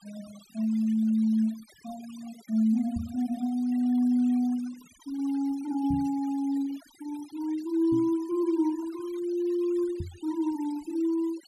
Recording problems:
denoising artefacts; signal-to-artefact ratio 23 dB
microphone bump; 4 times, first at 3 s; peak -3 dB vs average level

